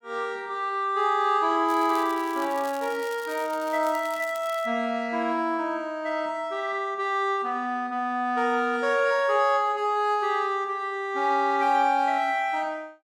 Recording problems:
crackling; from 1.5 to 4.5 s; loose cable, SNR 20 dB

